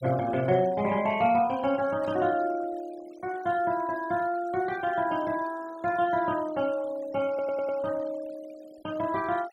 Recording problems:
denoising artefacts; signal-to-artefact ratio 21 dB
burst of static; at 2 s; peak -20 dB vs average level
audio stuttering; at 7.5 s

